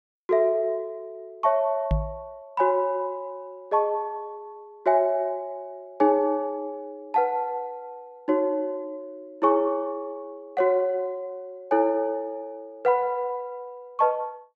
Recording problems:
knock on the microphone; at 2 s; peak +4 dB vs average level

